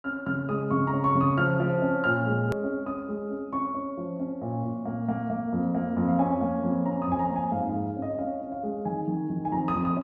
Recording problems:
hard cut with a click; at 2.5 s

